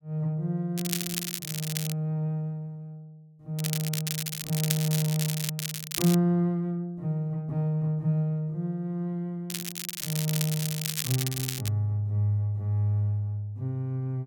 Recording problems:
crackling; from 1 to 2 s, from 3.5 to 6 s and from 9.5 to 12 s; loose cable, SNR 3 dB

